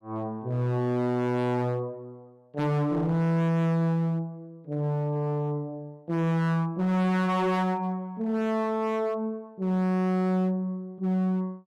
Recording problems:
distortion; hard clipping, signal-to-distortion ratio 6 dB

